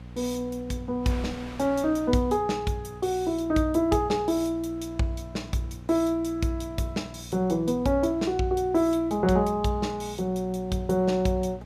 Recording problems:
mains hum; 60 Hz, harmonics up to 1 kHz, SNR 16 dB
wind on the microphone; below 2.6 kHz, SNR 25 dB

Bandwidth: 14.5 kHz